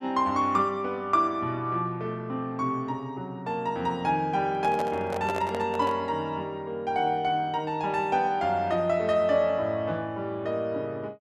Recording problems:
handling noise; from 4.5 to 6 s; peak -2 dB vs average level

